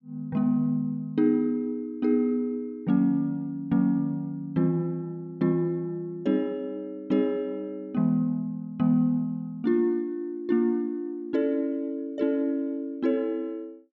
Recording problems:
none

